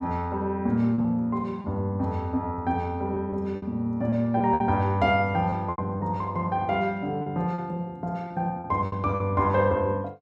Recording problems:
lost packets; 7% of the sound replaced, filled with repeated pitch periods

